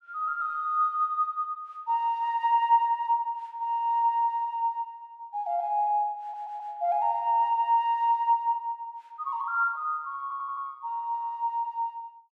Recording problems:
audio stuttering; at 6 s and at 10 s

